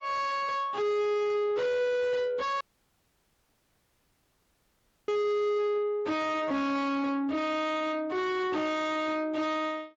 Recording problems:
lossy codec; Speex, then MP3, log-spectral distance 3 dB, nothing above 7.1 kHz
distortion; soft clipping, signal-to-distortion ratio 5 dB
audio cutting out; at 2.5 s for 2.5 s

